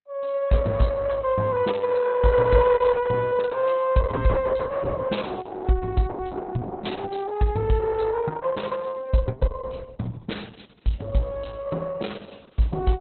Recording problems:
lossy codec; Opus, log-spectral distance 5 dB, nothing above 4.1 kHz

